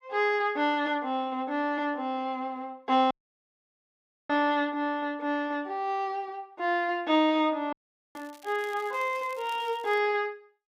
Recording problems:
dropout; at 3 s for 1 s and at 7.5 s
crackling; from 8 to 10 s; loose cable, SNR 24 dB

